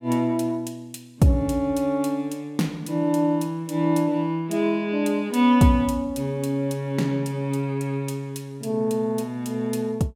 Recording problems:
none

